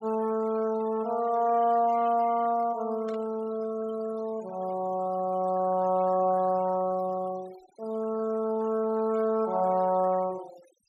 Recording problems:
noise reduction artefacts; signal-to-artefact ratio 22 dB
burst of static; at 3 s; peak -18 dB vs average level

